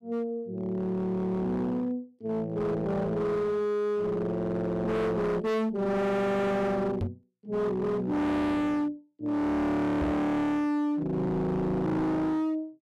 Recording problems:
distortion; hard clipping, signal-to-distortion ratio 6 dB
microphone thump; at 7 s and at 10 s; peak +3 dB vs average level

